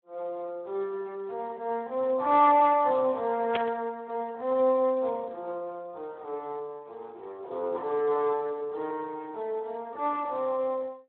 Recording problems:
telephone audio; 320 Hz to 3.5 kHz, Speex
burst of static; at 3.5 s; peak +1 dB vs average level

